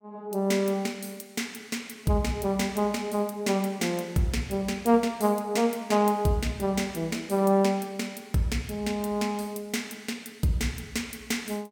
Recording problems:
none

